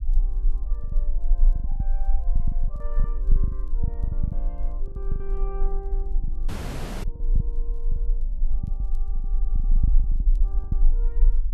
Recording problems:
low-frequency rumble; below 36 Hz, strongest tone 22 Hz, SNR -18 dB
crackle; vinyl, SNR 28 dB
packet loss; 15% of the sound replaced, filled with the last packet
dropout; at 6.5 s for 0.5 s

